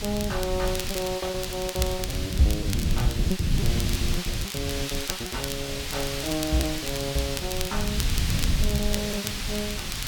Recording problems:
hiss; slope +2 dB per octave, SNR 1 dB
rumble; below 130 Hz, SNR 0 dB
crackling; vinyl, SNR 5 dB
packet loss; 15% of the sound replaced, filled with repeated pitch periods

